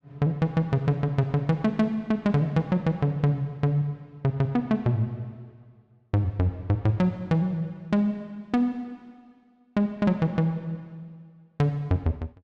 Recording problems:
none

